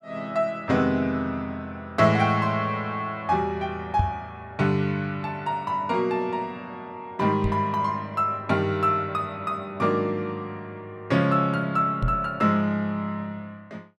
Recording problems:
microphone bump; at 4 s, at 7.5 s and at 12 s; peak +4 dB vs average level

